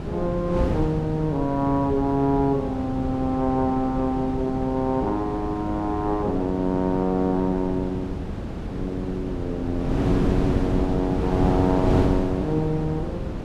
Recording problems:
wind noise; below 350 Hz, SNR 4 dB

